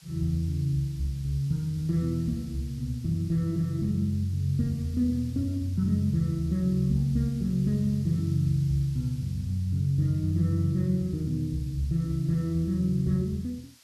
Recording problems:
hiss; slope +3 dB per octave, SNR 25 dB

